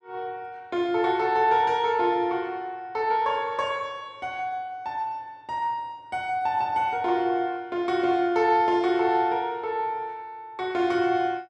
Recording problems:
none

